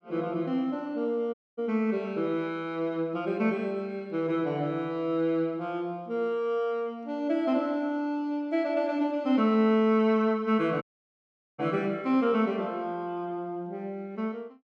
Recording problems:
dropout; at 1.5 s and at 11 s for 1 s

